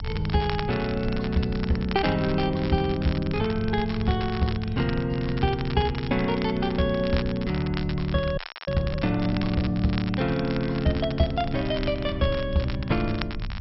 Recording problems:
low-pass filter; nothing above 5.5 kHz
rumble; below 110 Hz, SNR 12 dB
crackle; vinyl, SNR 13 dB
audio freezing; at 8.5 s

